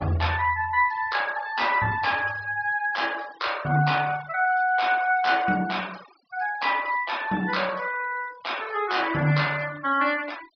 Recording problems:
treble cut off; nothing above 5.5 kHz
denoising artefacts; signal-to-artefact ratio 18 dB

